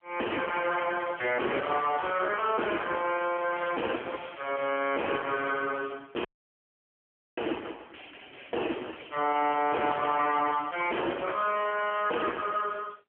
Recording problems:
telephone audio; 260 Hz to 3.2 kHz, AMR-NB
distorted audio; soft clipping, signal-to-distortion ratio 8 dB
dropout; at 6.5 s for 1 s

